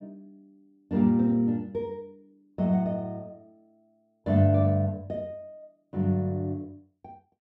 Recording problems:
none

